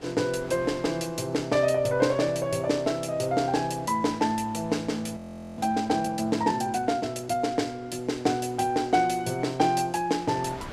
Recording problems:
wind noise; below 1.6 kHz, SNR 23 dB
frozen audio; at 5 s

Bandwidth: 15 kHz